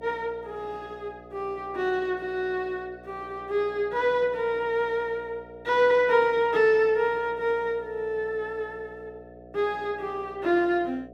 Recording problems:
hum; 60 Hz, harmonics up to 720 Hz, SNR 21 dB

